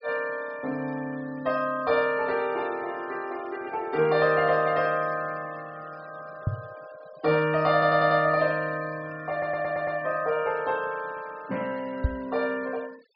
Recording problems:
treble missing; nothing above 5.5 kHz
denoising artefacts; signal-to-artefact ratio 22 dB
microphone thump; at 6.5 s and at 12 s; peak +5 dB vs average level
audio stuttering; at 7.5 s and at 9.5 s

